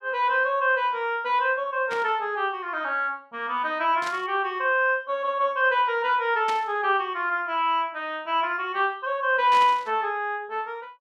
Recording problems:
burst of static; 4 times, first at 2 s; peak -6 dB vs average level

